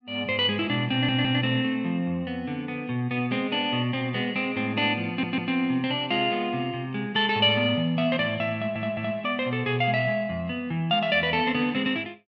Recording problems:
stutter; at 1 s, at 5 s and at 8.5 s

